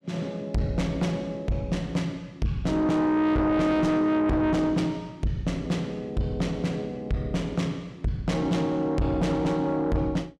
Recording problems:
distortion; soft clipping, signal-to-distortion ratio 7 dB

